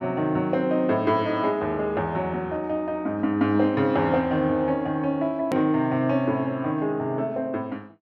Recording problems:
hard cut with a click; at 5.5 s

